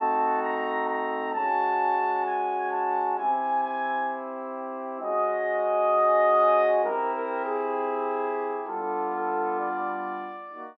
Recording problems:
none

